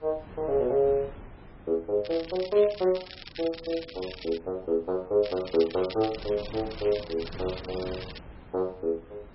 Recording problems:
codec artefacts; MP3, log-spectral distance 7 dB, nothing above 4.5 kHz
wind on the microphone; below 540 Hz, SNR 18 dB
crackling; from 2 to 4.5 s and from 5 to 8 s; loose cable, SNR 15 dB

